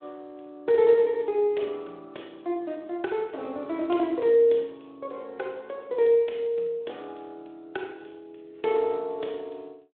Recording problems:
phone line; 280 Hz to 3.7 kHz, Speex

